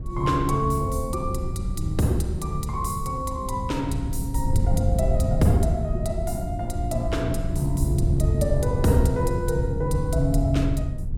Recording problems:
wind on the microphone; below 110 Hz, SNR 2 dB

